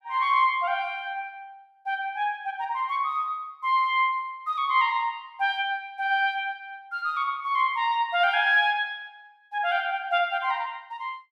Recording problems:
none

